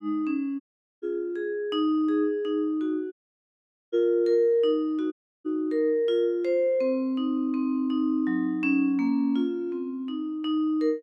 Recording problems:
dropout; at 0.5 s, at 3 s for 1 s and at 5 s

